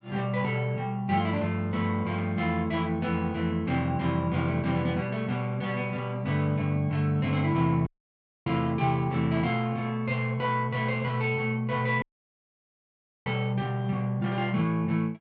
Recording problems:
audio cutting out; at 8 s for 0.5 s and at 12 s for 1 s

